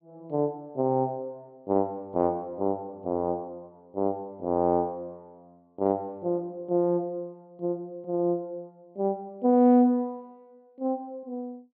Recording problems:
treble cut off; nothing above 4.6 kHz

